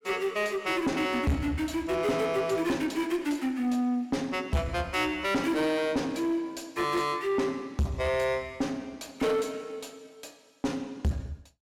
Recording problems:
distortion; soft clipping, signal-to-distortion ratio 7 dB

